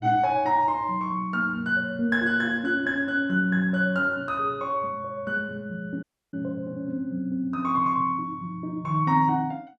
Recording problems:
dropout; at 6 s

